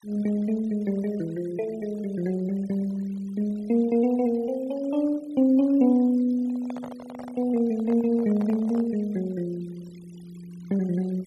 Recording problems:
noise reduction artefacts; signal-to-artefact ratio 26 dB
microphone handling noise; from 6.5 to 9 s; peak -11 dB vs average level

